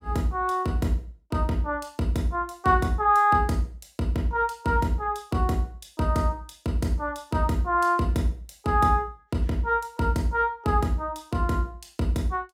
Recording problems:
none

